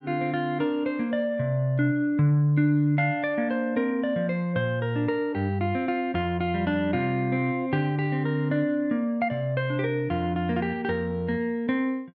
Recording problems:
none

